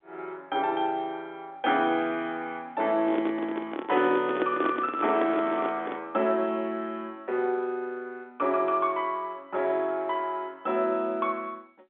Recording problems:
telephone audio; 260 Hz to 3.6 kHz, G.711
handling noise; from 3 to 6 s; peak +3 dB vs average level

